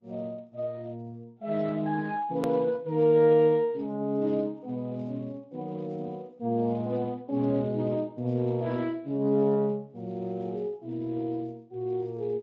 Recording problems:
lossy compression; Vorbis, then Speex, log-spectral distance 2 dB, nothing above 13.1 kHz
hard cut with a click; at 2.5 s

